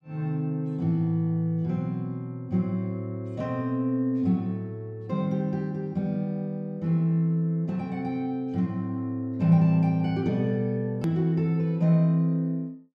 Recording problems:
hard cut with a click; at 11 s

